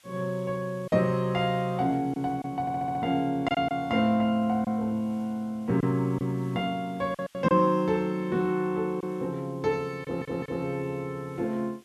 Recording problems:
hiss; SNR 30 dB
packet loss; 3% of the sound replaced, filled with silence
audio stuttering; at 2.5 s and at 10 s

